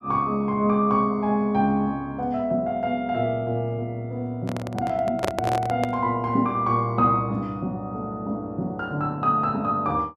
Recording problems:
microphone handling noise; from 4.5 to 6 s; peak +3 dB vs average level

